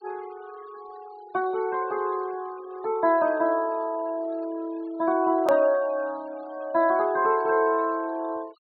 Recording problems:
low-pass filter; nothing above 4.7 kHz
denoising artefacts; signal-to-artefact ratio 26 dB
hard cut with a click; at 5.5 s

